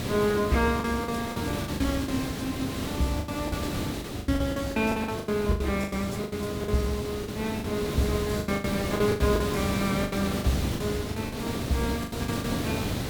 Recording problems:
hiss; SNR 3 dB
lost packets; 14% of the sound replaced, filled with the last packet

